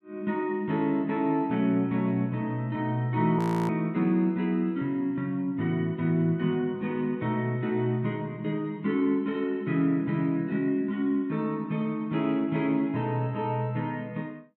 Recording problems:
frozen audio; at 3.5 s

